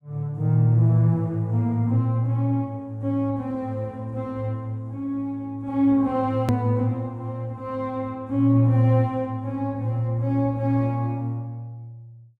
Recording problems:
hard cut with a click; at 6.5 s

